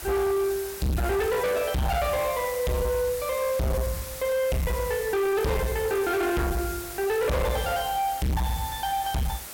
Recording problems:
distorted audio; hard clipping, signal-to-distortion ratio 6 dB
hiss; slope -1 dB per octave, SNR 11 dB

